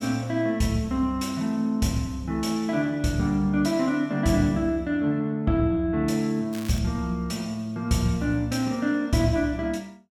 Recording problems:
crackling; at 6.5 s; loose cable, SNR 18 dB

